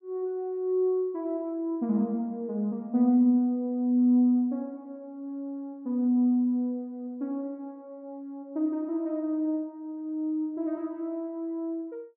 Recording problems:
none

